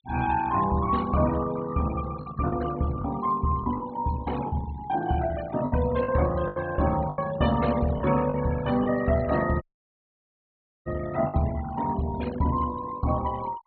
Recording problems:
treble missing; nothing above 4.3 kHz
noise reduction artefacts; signal-to-artefact ratio 15 dB
lost packets; 5% of the sound replaced, filled with the last packet
dropout; at 9.5 s for 1 s

